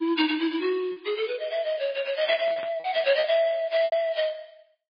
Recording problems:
codec artefacts; MP3, log-spectral distance 3 dB, nothing above 4.6 kHz
packet loss; 5% of the sound replaced, filled with repeated pitch periods
static burst; at 2.5 s; peak -10 dB vs average level

